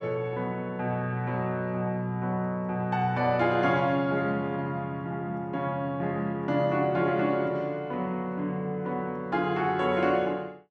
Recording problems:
none

